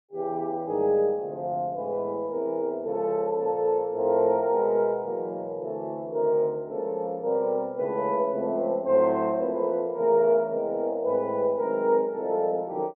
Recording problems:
none

